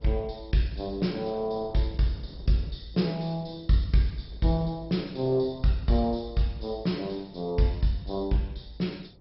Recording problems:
lossy compression; MP2, log-spectral distance 3 dB, nothing above 5.5 kHz
wind noise; below 340 Hz, SNR 22 dB

